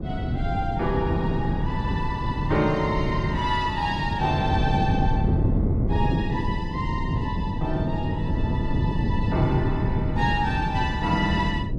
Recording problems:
wind noise; below 210 Hz, SNR -1 dB

